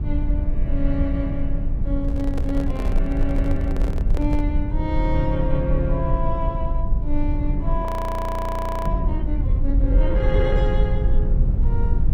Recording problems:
low-frequency rumble; below 64 Hz, SNR -3 dB
handling noise; from 2 to 4.5 s; peak -2 dB vs average level
audio freezing; at 8 s for 1 s

